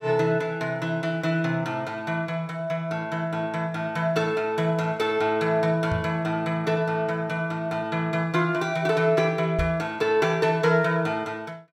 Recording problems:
microphone bump; at 6 s and at 9.5 s; peak 0 dB vs average level

